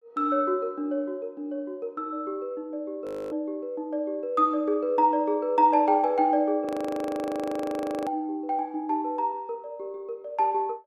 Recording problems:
frozen audio; at 3 s and at 6.5 s for 1.5 s

